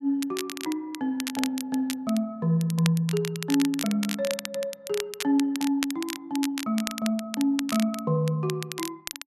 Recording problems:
crackling; vinyl, SNR 8 dB

